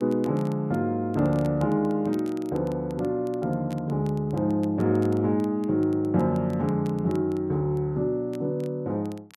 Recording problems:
crackling; vinyl, SNR 28 dB

